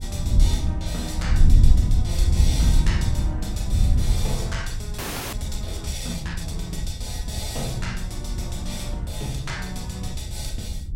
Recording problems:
wind on the microphone; below 82 Hz, SNR -6 dB
frozen audio; at 5 s

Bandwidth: 16.5 kHz